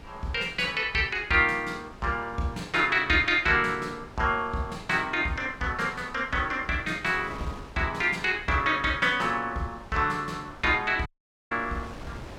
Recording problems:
wind noise; below 910 Hz, SNR 20 dB
dropout; at 11 s

